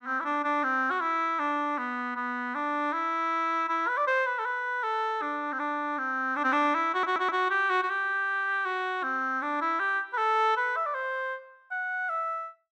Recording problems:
audio stuttering; at 7 s

